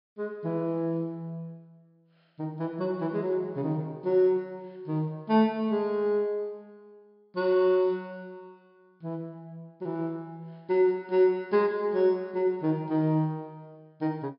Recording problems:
treble missing; nothing above 5.5 kHz

